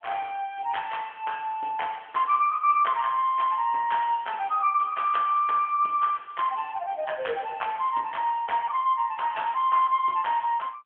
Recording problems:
phone line; 300 Hz to 3.3 kHz, AMR-NB

